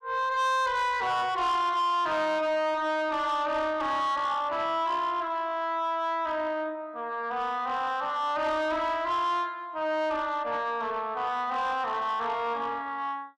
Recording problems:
distorted audio; soft clipping, signal-to-distortion ratio 12 dB

